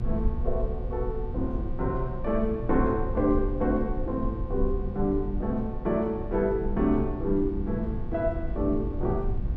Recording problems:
hum; 60 Hz, harmonics up to 1.9 kHz, SNR 15 dB
rumble; below 52 Hz, strongest tone 22 Hz, SNR 7 dB
wind on the microphone; below 160 Hz, SNR 12 dB

